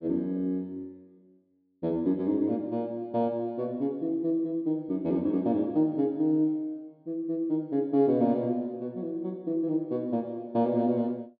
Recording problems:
treble cut off; nothing above 4.9 kHz

